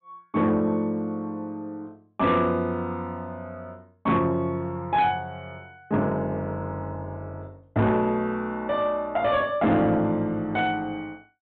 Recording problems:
treble missing; nothing above 4 kHz
distortion; soft clipping, signal-to-distortion ratio 11 dB

